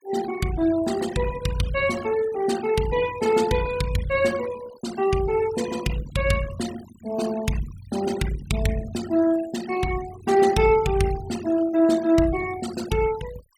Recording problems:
noise reduction artefacts; signal-to-artefact ratio 15 dB

